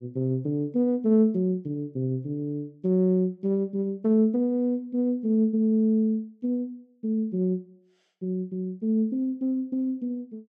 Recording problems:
none

